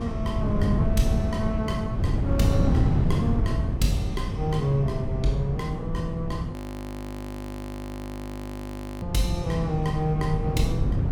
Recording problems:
hum; 50 Hz, harmonics up to 500 Hz, SNR 12 dB
wind noise; below 180 Hz, SNR -1 dB
audio freezing; at 6.5 s for 2.5 s

